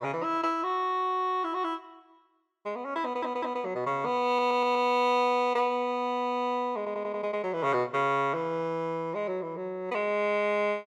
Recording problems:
stutter; at 3 s, at 4.5 s and at 7 s

